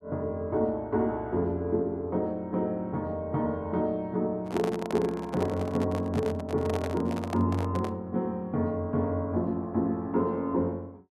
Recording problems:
handling noise; from 4.5 to 8 s; peak -1 dB vs average level

